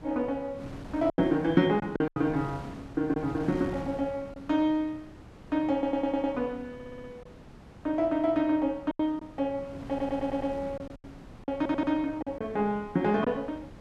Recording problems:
wind noise; below 530 Hz, SNR 17 dB
packet loss; 6% of the sound replaced, filled with silence
audio stuttering; 4 times, first at 5.5 s

